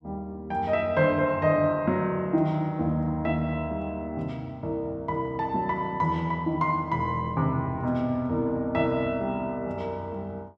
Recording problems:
none

